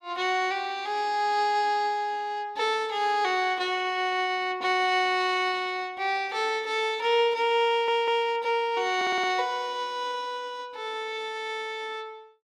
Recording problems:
stutter; at 7.5 s and at 9 s

